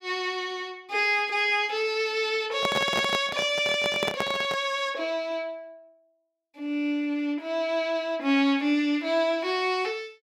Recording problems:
handling noise; from 2.5 to 4.5 s; peak 0 dB vs average level

